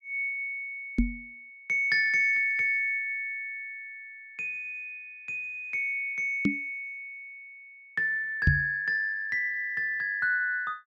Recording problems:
microphone thump; at 1 s, at 6.5 s and at 8.5 s; peak +8 dB vs average level

